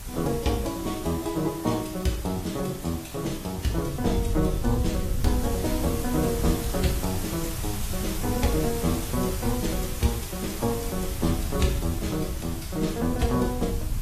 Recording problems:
lossy compression; AAC, log-spectral distance 7 dB, nothing above 14.7 kHz
background hiss; slope -1 dB per octave, SNR 9 dB
wind noise; below 92 Hz, SNR 6 dB

